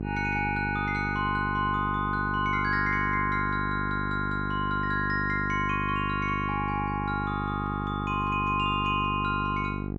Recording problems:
hum; 50 Hz, harmonics up to 850 Hz, SNR 5 dB

